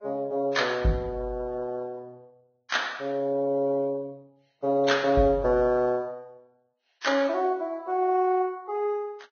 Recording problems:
lossy codec; Vorbis, log-spectral distance 2 dB, nothing above 6.5 kHz

